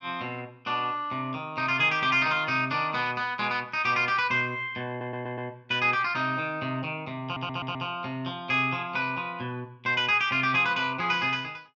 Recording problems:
audio stuttering; at 5 s and at 7 s

